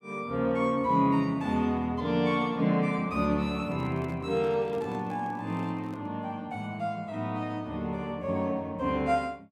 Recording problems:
microphone handling noise; from 3.5 to 6 s; peak -9 dB vs average level

